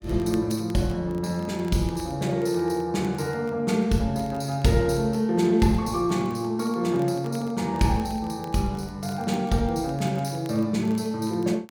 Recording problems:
crackle; vinyl, SNR 27 dB

